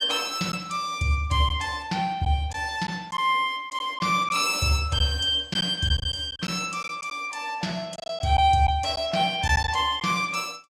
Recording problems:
packet loss; 4% of the sound replaced, filled with silence

